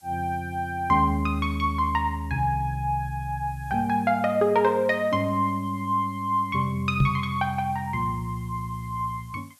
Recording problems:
hiss; SNR 29 dB
microphone bump; at 7 s; peak +6 dB vs average level

